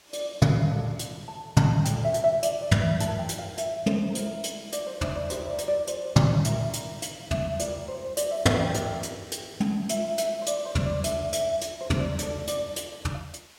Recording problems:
hiss; slope 0 dB per octave, SNR 26 dB

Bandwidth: 16.5 kHz